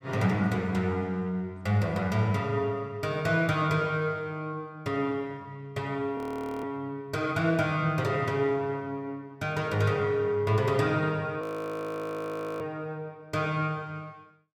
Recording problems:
frozen audio; at 6 s and at 11 s for 1 s

